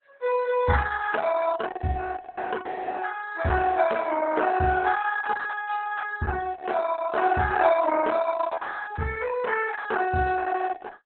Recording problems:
lossy compression; Opus, log-spectral distance 5 dB, nothing above 3.8 kHz

